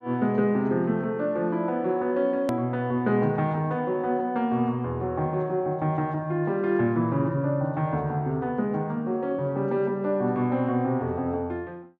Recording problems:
click at an edit; at 2.5 s

